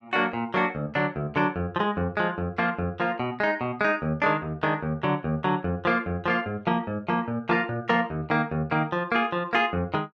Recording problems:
none

